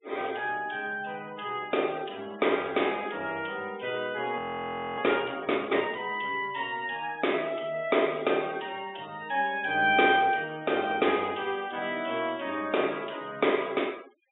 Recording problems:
low-pass filter; nothing above 3.6 kHz
denoising artefacts; signal-to-artefact ratio 23 dB
frozen audio; at 4.5 s for 0.5 s

